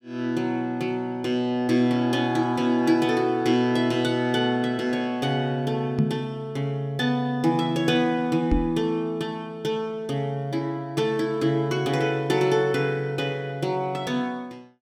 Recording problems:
knock on the microphone; at 6 s and at 8.5 s; peak +5 dB vs average level

